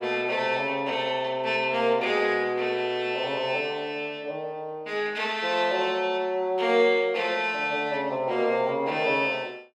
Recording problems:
none

